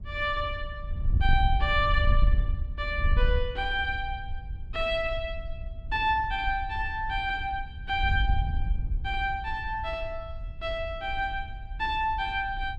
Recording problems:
wind on the microphone; below 70 Hz, SNR 3 dB

